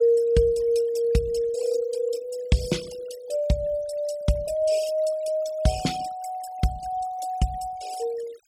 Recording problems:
noise reduction artefacts; signal-to-artefact ratio 17 dB

